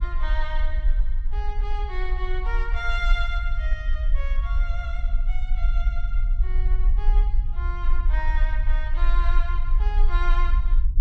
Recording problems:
low-frequency rumble; below 42 Hz, strongest tone 22 Hz, SNR -8 dB

